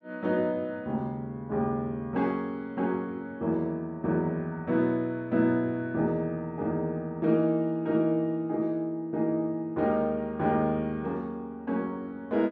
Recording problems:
none

